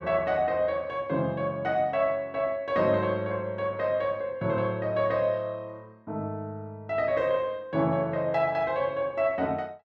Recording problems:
none

